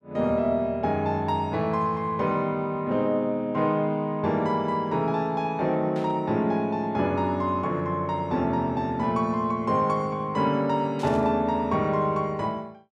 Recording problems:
static burst; at 6 s and at 11 s; peak -14 dB vs average level

